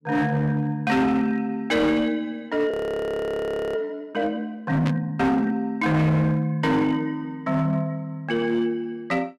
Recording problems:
distortion; hard clipping, signal-to-distortion ratio 11 dB
frozen audio; at 2.5 s for 1 s
burst of static; at 5 s; peak -6 dB vs average level

